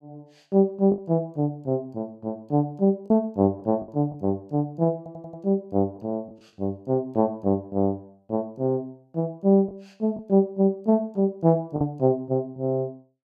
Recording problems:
lost packets; 3% of the sound replaced, filled with the last packet
stutter; at 5 s

